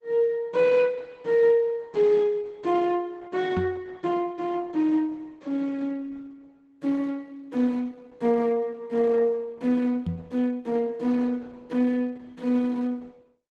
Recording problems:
lossy compression; Opus, log-spectral distance 2 dB
microphone bump; at 3.5 s and at 10 s; peak +1 dB vs average level

